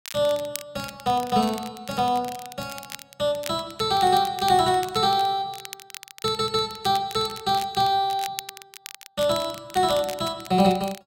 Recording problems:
crackle; vinyl, SNR 16 dB

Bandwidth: 16 kHz